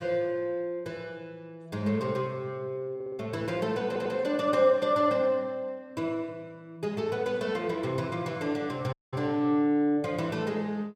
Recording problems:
stutter; at 3 s and at 4 s
dropout; at 9 s

